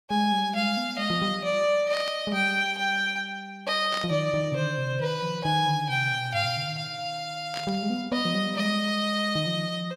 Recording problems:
static burst; at 2 s, at 4 s and at 7.5 s; peak -6 dB vs average level

